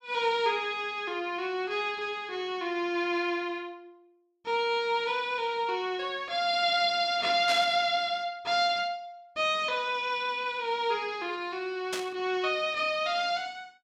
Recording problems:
static burst; at 7.5 s and at 12 s; peak -1 dB vs average level

